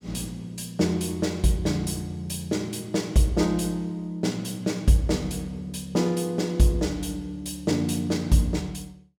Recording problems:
none

